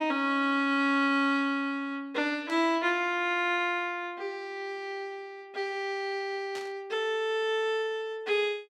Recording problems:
static burst; at 2.5 s and at 6.5 s; peak -10 dB vs average level

